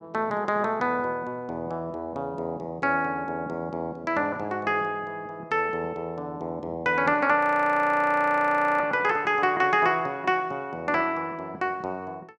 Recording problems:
audio freezing; at 7.5 s for 1.5 s

